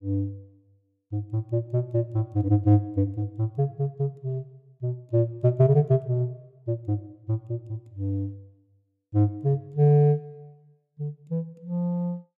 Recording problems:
none

